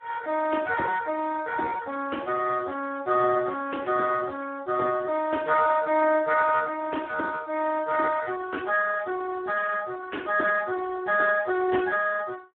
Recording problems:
telephone audio; 280 Hz to 2.2 kHz, Speex

